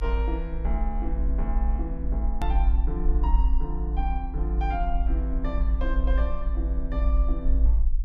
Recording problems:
low-frequency rumble; below 54 Hz, strongest tone 52 Hz, SNR -7 dB
click at an edit; at 2.5 s

